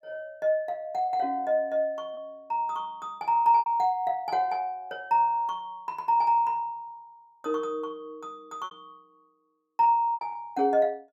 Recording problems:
packet loss; 3% of the sound replaced, filled with repeated pitch periods

